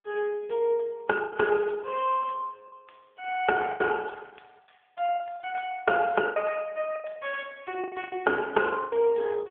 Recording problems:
phone line; 240 Hz to 3.4 kHz, AMR-NB
packet loss; 9% of the sound replaced, filled with the last packet

